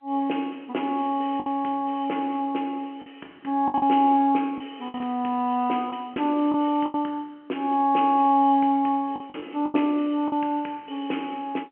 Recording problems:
phone line; 220 Hz to 3.2 kHz, G.711
packet loss; 6% of the sound replaced, filled with the last packet

